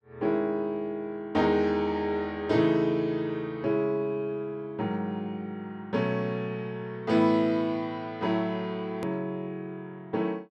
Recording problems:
click at an edit; at 9 s

